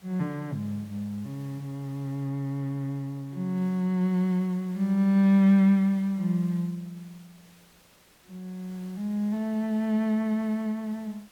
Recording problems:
background hiss; slope -2 dB per octave, SNR 28 dB

